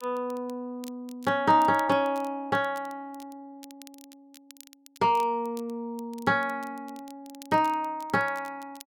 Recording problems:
crackle; vinyl, SNR 25 dB

